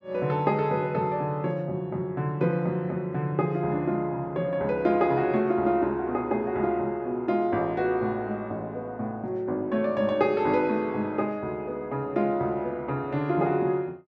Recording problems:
none

